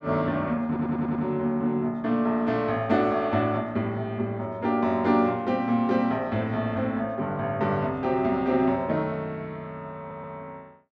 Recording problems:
stutter; at 0.5 s and at 10 s

